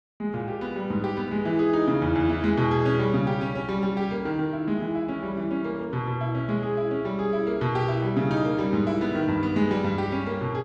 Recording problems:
none

